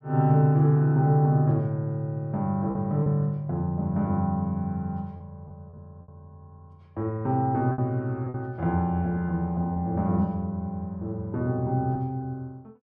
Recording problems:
lost packets; 3% of the sound replaced, filled with repeated pitch periods

